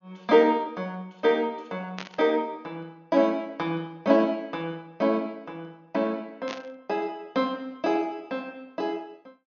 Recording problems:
treble missing; nothing above 6.7 kHz
static burst; at 2 s and at 6.5 s; peak -5 dB vs average level

